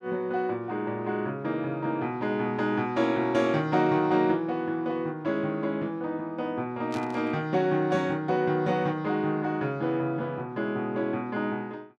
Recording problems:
static burst; at 7 s; peak -11 dB vs average level

